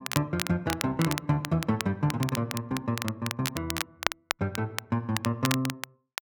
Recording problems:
crackle; vinyl, SNR 5 dB

